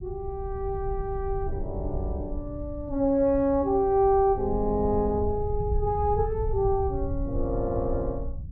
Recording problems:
low-frequency rumble; below 88 Hz, SNR 8 dB

